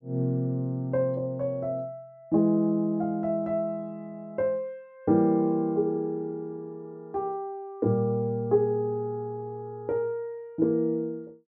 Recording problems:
none

